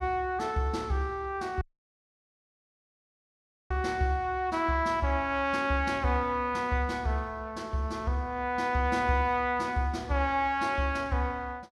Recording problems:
dropout; at 1.5 s for 2 s

